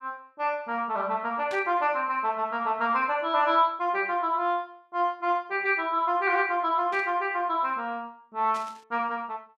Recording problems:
burst of static; at 1.5 s, at 7 s and at 8.5 s; peak -11 dB vs average level

